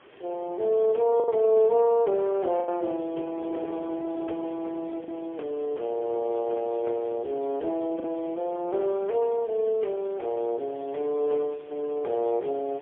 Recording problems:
telephone audio; 300 Hz to 3.7 kHz, AMR-NB, then MP3
background hiss; SNR 28 dB
wind on the microphone; below 590 Hz, SNR 21 dB
packet loss; 1.9% of the sound replaced, filled with the last packet

